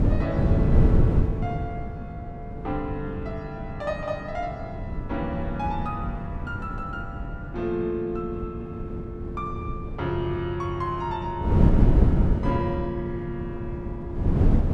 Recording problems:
wind noise; below 170 Hz, SNR -4 dB

